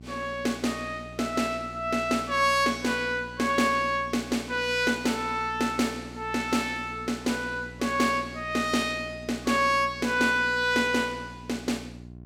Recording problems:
hum; 60 Hz, harmonics up to 720 Hz, SNR 18 dB

